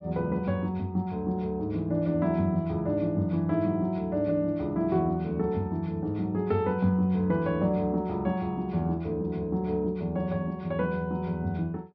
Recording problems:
treble missing; nothing above 5.5 kHz

